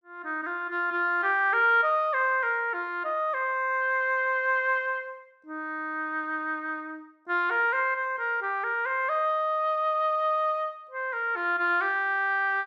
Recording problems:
none

